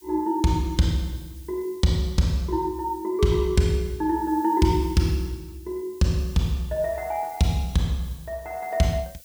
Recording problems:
hiss; slope +7 dB per octave, SNR 24 dB

